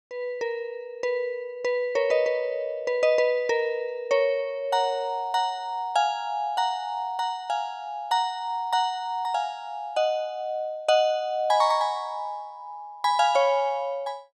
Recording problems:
none

